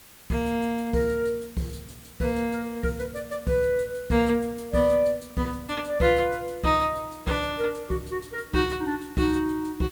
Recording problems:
background hiss; slope -1 dB per octave, SNR 22 dB

